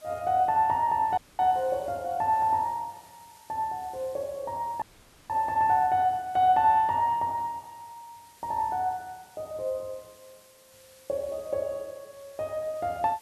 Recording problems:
hiss; slope -1 dB per octave, SNR 27 dB
dropout; at 1 s and at 5 s

